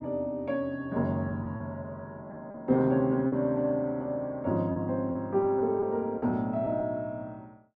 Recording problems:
packet loss; 4% of the sound replaced, filled with repeated pitch periods

